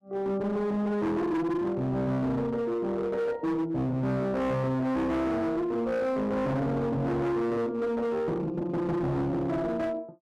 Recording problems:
distorted audio; hard clipping, signal-to-distortion ratio 8 dB

